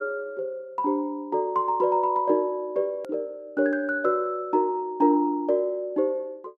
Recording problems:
hard cut with a click; at 3 s

